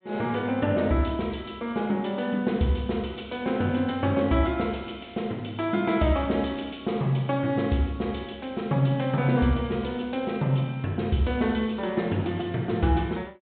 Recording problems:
treble missing; nothing above 4 kHz

